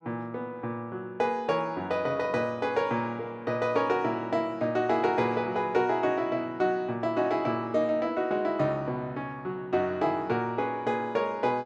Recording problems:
none

